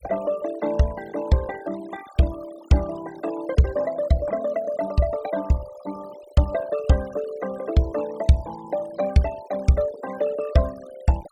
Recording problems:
denoising artefacts; signal-to-artefact ratio 18 dB

